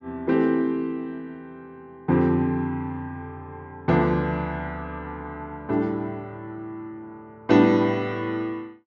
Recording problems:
low-pass filter; nothing above 8 kHz

